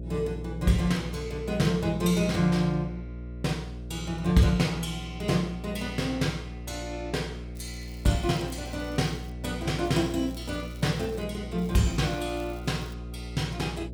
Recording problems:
electrical hum; 60 Hz, harmonics up to 660 Hz, SNR 10 dB
crackling; from 7.5 to 9.5 s, from 10 to 11 s and from 12 to 13 s; loose cable, SNR 26 dB

